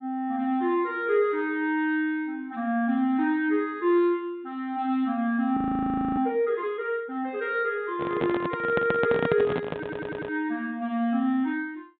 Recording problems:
treble cut off; nothing above 4 kHz
frozen audio; at 5.5 s for 0.5 s
handling noise; from 8 to 10 s; peak +2 dB vs average level
stutter; at 8.5 s and at 9.5 s

